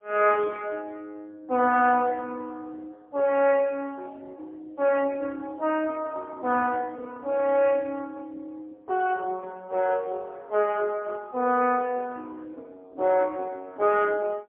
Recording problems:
phone line; 220 Hz to 3.3 kHz, AMR-NB, then MP3

